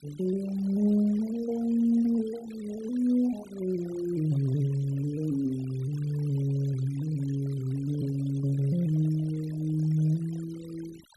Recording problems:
denoising artefacts; signal-to-artefact ratio 22 dB

